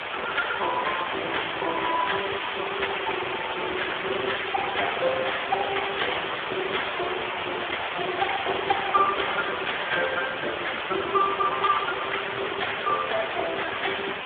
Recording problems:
telephone audio; 300 Hz to 3.5 kHz, Speex
background hiss; SNR 2 dB

